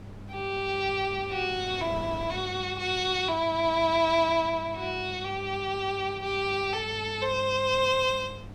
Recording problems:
mains hum; 50 Hz, harmonics up to 500 Hz, SNR 17 dB
wind noise; below 540 Hz, SNR 19 dB

